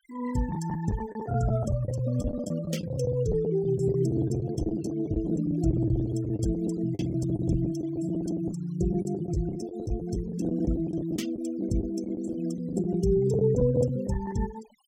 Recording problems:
noise reduction artefacts; signal-to-artefact ratio 21 dB
packet loss; 13% of the sound replaced, filled with the last packet

